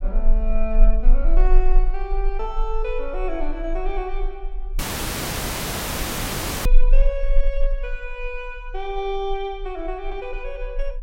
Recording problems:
rumble; below 30 Hz, strongest tone 24 Hz, SNR -5 dB
dropout; at 5 s for 2 s

